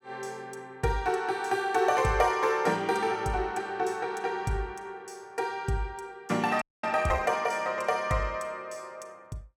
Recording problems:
frozen audio; at 6.5 s

